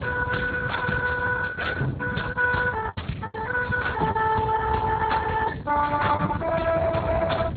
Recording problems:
lossy codec; Opus, then Speex, log-spectral distance 5 dB
rumble; below 180 Hz, SNR 9 dB
lost packets; 6% of the sound replaced, filled with the last packet

